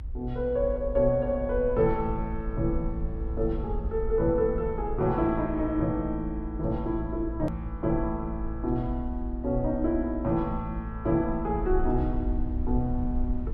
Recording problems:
low-frequency rumble; below 58 Hz, SNR 7 dB
click at an edit; at 7.5 s

